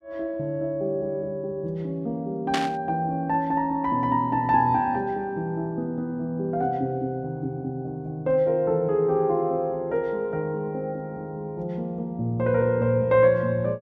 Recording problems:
burst of static; at 2.5 s; peak +2 dB vs average level

